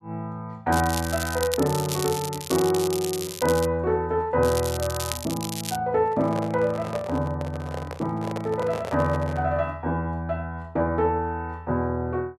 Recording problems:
crackling; from 0.5 to 3.5 s and from 4.5 to 6 s; loose cable, SNR 8 dB
handling noise; from 6 to 9.5 s; peak -3 dB vs average level

